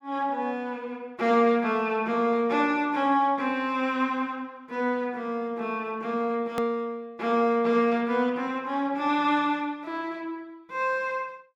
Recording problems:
click at an edit; at 6.5 s

